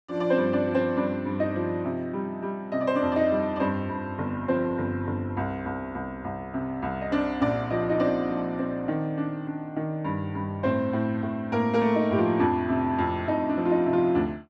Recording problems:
none

